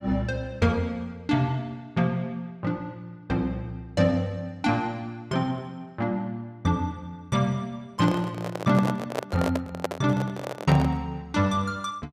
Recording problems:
microphone handling noise; from 8 to 11 s; peak +4 dB vs average level

